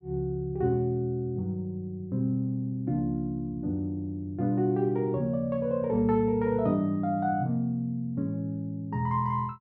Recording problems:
none

